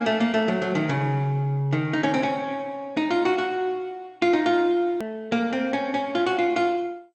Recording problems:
codec artefacts; MP2, log-spectral distance 2 dB
click at an edit; at 5 s

